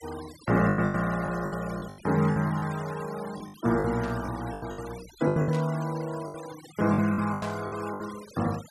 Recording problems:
noise reduction artefacts; signal-to-artefact ratio 17 dB
lost packets; 14% of the sound replaced, filled with the last packet
burst of static; at 4 s, at 5.5 s and at 7.5 s; peak -10 dB vs average level

